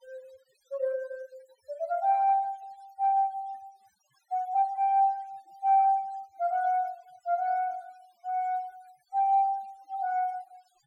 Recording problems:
noise reduction artefacts; signal-to-artefact ratio 28 dB

